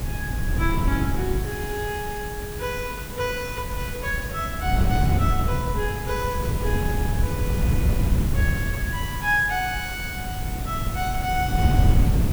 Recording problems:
hum; 50 Hz, harmonics up to 300 Hz, SNR 13 dB
hiss; slope -2 dB per octave, SNR 8 dB
wind noise; below 140 Hz, SNR -3 dB

